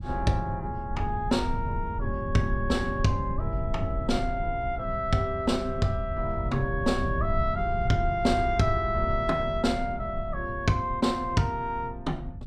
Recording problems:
rumble; below 100 Hz, SNR 6 dB

